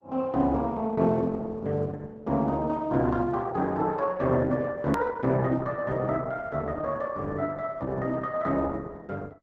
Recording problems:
lossy codec; Opus, log-spectral distance 3 dB, nothing above 13.1 kHz
hard cut with a click; at 5 s

